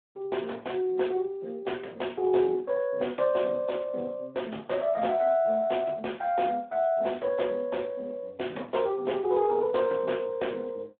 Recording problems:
telephone audio; 260 Hz to 3.6 kHz, Speex

